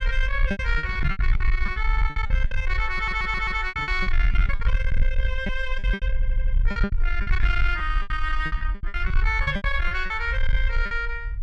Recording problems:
distorted audio; soft clipping, signal-to-distortion ratio 10 dB
rumble; below 50 Hz, SNR 0 dB
packet loss; 16% of the sound replaced, filled with repeated pitch periods
knock on the microphone; at 1 s and at 9.5 s; peak +5 dB vs average level
audio stuttering; at 3 s and at 6 s

